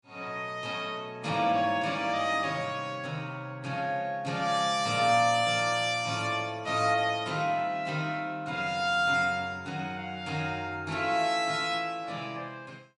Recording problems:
codec artefacts; MP3, log-spectral distance 2 dB, nothing above 9.5 kHz

